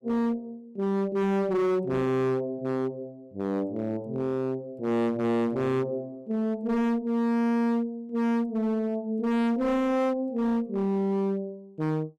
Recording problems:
distortion; hard clipping, signal-to-distortion ratio 6 dB

